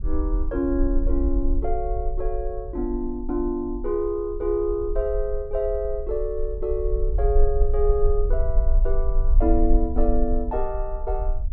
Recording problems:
rumble; below 46 Hz, strongest tone 20 Hz, SNR 1 dB

